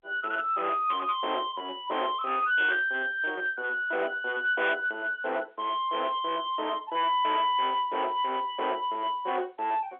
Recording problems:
telephone audio; 390 Hz to 3.7 kHz, G.711
distorted audio; hard clipping, uneven, signal-to-distortion ratio 11 dB

